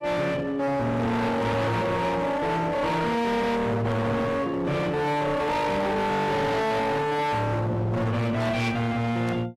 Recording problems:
lossy compression; AAC, log-spectral distance 2 dB, nothing above 13.1 kHz
distortion; hard clipping, signal-to-distortion ratio 6 dB

